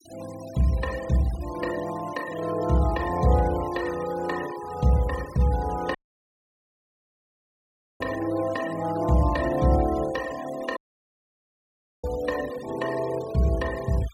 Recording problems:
noise reduction artefacts; signal-to-artefact ratio 18 dB
dropout; at 6 s for 2 s and at 11 s for 1.5 s

